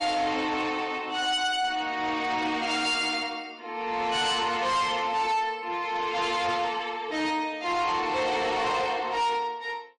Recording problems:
lossy codec; MP3, log-spectral distance 2 dB, nothing above 10.4 kHz
distortion; soft clipping, signal-to-distortion ratio 10 dB

